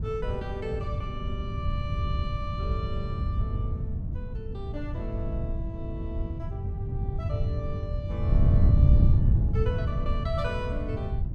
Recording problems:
wind noise; below 120 Hz, SNR -9 dB

